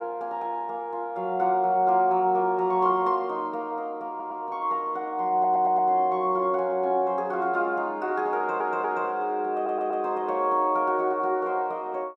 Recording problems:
stutter; 4 times, first at 4 s

